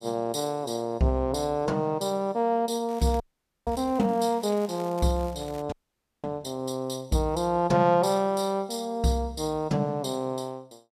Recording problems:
crackling; from 3 to 5.5 s; loose cable, SNR 24 dB
frozen audio; at 3 s and at 5.5 s for 0.5 s

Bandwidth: 14.5 kHz